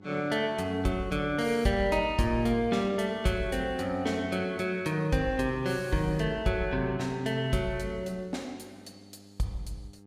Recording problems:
electrical hum; 50 Hz, harmonics up to 900 Hz, SNR 24 dB

